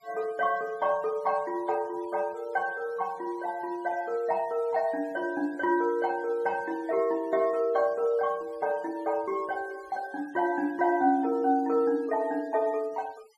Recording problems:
noise reduction artefacts; signal-to-artefact ratio 26 dB

